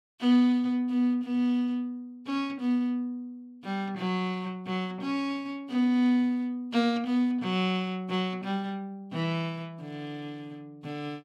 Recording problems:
none

